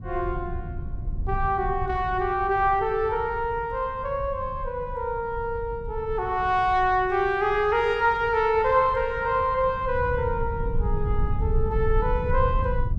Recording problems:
low-frequency rumble; below 92 Hz, SNR 8 dB

